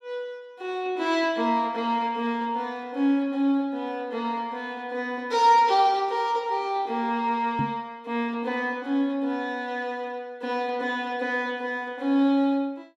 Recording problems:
knock on the microphone; at 7.5 s; peak 0 dB vs average level

